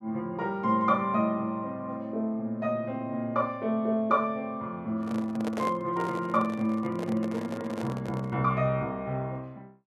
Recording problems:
handling noise; from 5 to 8.5 s; peak -2 dB vs average level

